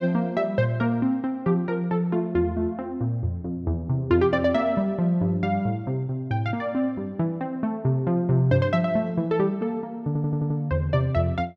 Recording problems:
audio stuttering; at 10 s

